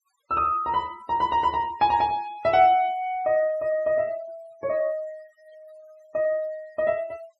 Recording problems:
denoising artefacts; signal-to-artefact ratio 26 dB

